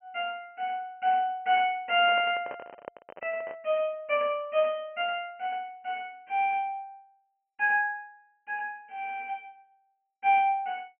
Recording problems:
treble missing; nothing above 3.1 kHz
microphone handling noise; from 2 to 3.5 s; peak -7 dB vs average level

